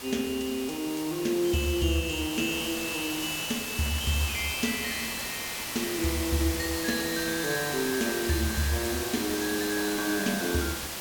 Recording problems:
background hiss; slope -1 dB per octave, SNR 4 dB

